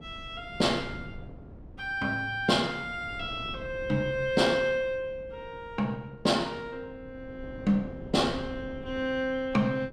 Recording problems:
wind on the microphone; below 280 Hz, SNR 17 dB

